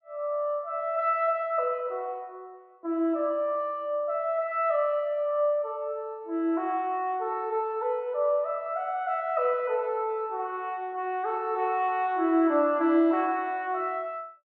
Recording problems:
none

